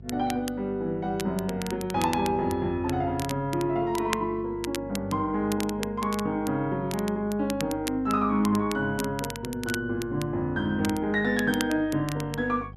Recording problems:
mains hum; 50 Hz, harmonics up to 450 Hz, SNR 17 dB
crackling; vinyl, SNR 12 dB

